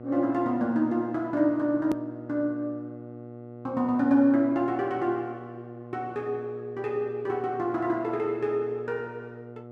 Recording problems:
electrical hum; 60 Hz, harmonics up to 1.3 kHz, SNR 15 dB
hard cut with a click; at 2 s

